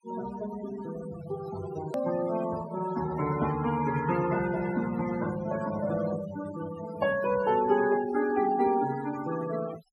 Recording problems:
denoising artefacts; signal-to-artefact ratio 12 dB
click at an edit; at 2 s

